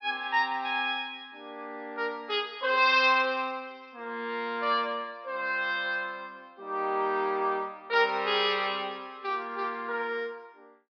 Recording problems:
low-pass filter; nothing above 5.5 kHz

